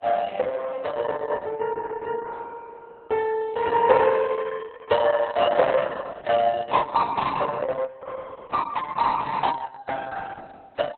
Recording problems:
lossy codec; Vorbis, then Opus, log-spectral distance 4 dB, nothing above 4.1 kHz

